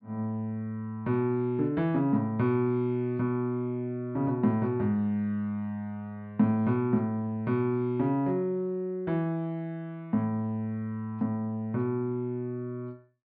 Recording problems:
treble cut off; nothing above 5.5 kHz

